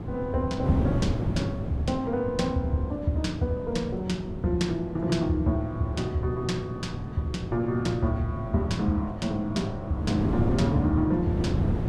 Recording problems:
wind noise; below 270 Hz, SNR 4 dB

